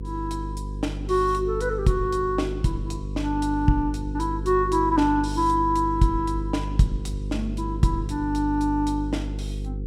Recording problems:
electrical hum; 50 Hz, harmonics up to 500 Hz, SNR 7 dB

